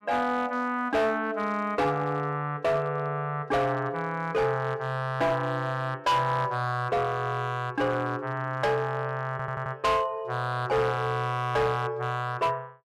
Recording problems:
distorted audio; hard clipping, signal-to-distortion ratio 10 dB
audio stuttering; at 9.5 s

